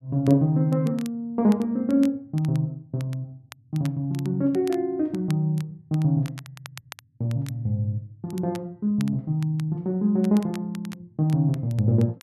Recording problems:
crackle; vinyl, SNR 23 dB

